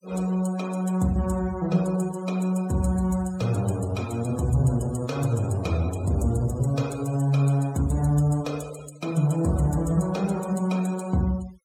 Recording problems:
noise reduction artefacts; signal-to-artefact ratio 20 dB

